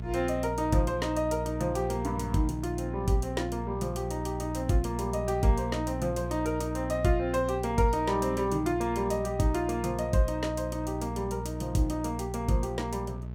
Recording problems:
electrical hum; 60 Hz, harmonics up to 660 Hz, SNR 7 dB

